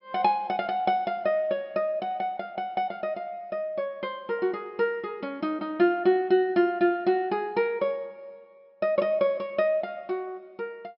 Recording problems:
treble missing; nothing above 5.3 kHz

